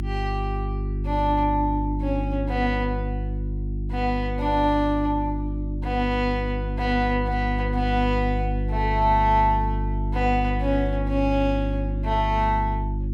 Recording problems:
electrical hum; 50 Hz, harmonics up to 350 Hz, SNR 3 dB

